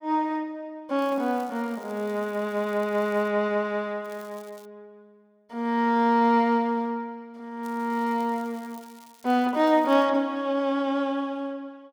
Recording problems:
crackle; from 1 to 3.5 s, at 4 s and from 7.5 to 10 s; loose cable, SNR 27 dB

